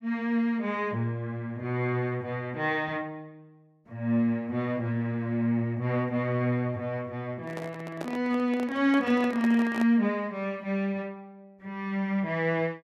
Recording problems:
microphone handling noise; from 7.5 to 10 s; peak -4 dB vs average level

